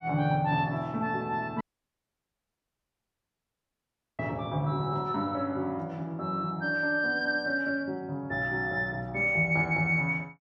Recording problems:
dropout; at 1.5 s for 2.5 s

